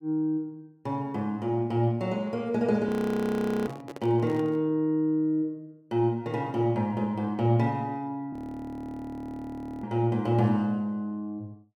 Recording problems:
audio freezing; at 3 s for 1 s and at 8.5 s for 1.5 s
handling noise; at 3.5 s; peak -9 dB vs average level

